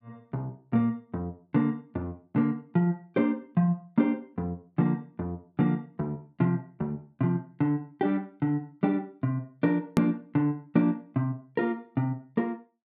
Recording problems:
edit click; at 10 s

